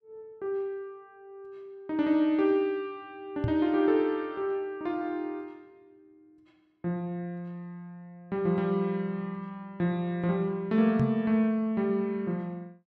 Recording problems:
knock on the microphone; at 3.5 s and at 11 s; peak +4 dB vs average level

